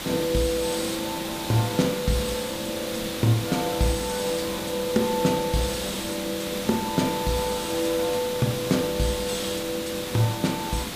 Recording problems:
background hiss; SNR 5 dB

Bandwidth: 15 kHz